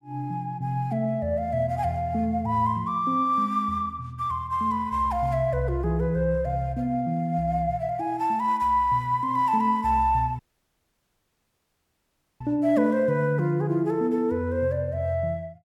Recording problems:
dropout; at 10 s for 2 s

